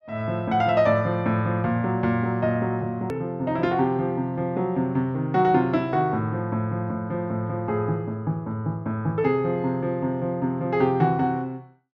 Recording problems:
treble cut off; nothing above 8 kHz
click at an edit; at 3 s

